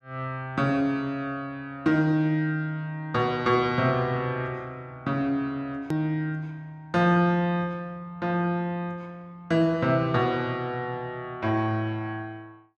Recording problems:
click at an edit; at 6 s

